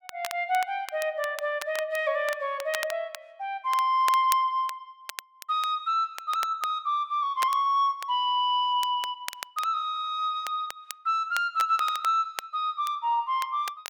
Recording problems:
crackle; vinyl, SNR 14 dB

